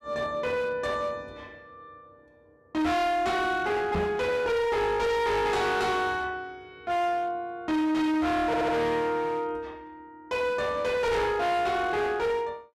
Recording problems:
distortion; hard clipping, uneven, signal-to-distortion ratio 6 dB
microphone thump; at 4 s; peak +1 dB vs average level
audio stuttering; at 8.5 s

